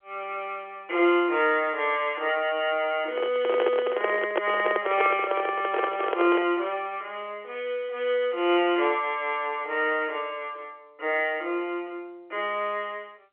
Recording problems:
telephone audio; 300 Hz to 3.3 kHz, G.711
handling noise; from 3 to 6.5 s; peak +5 dB vs average level

